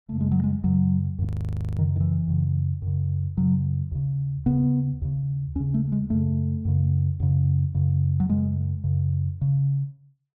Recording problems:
audio freezing; at 1.5 s for 0.5 s

